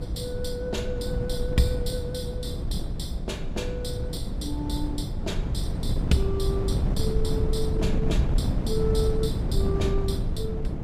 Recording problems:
hum; 60 Hz, harmonics up to 720 Hz, SNR 10 dB
wind on the microphone; below 150 Hz, SNR -2 dB

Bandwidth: 14.5 kHz